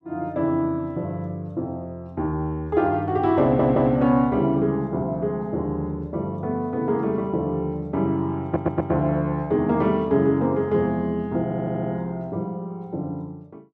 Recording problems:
stutter; at 3.5 s, at 8.5 s and at 11 s

